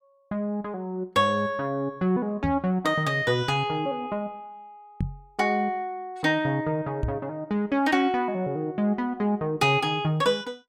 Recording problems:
knock on the microphone; at 2.5 s, at 5 s and at 7 s; peak +1 dB vs average level

